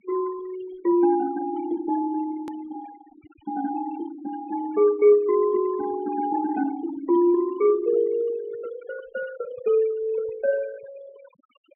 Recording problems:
treble cut off; nothing above 3.3 kHz
noise reduction artefacts; signal-to-artefact ratio 19 dB
edit click; at 2.5 s

